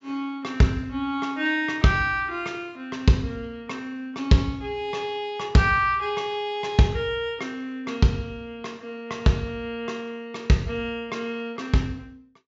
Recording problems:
treble missing; nothing above 7.4 kHz

